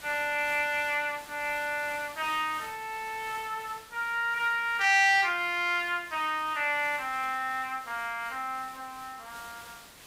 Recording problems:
hiss; slope -1 dB per octave, SNR 19 dB

